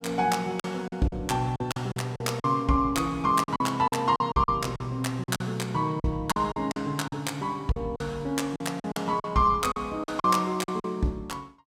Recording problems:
packet loss; 12% of the sound replaced, filled with silence

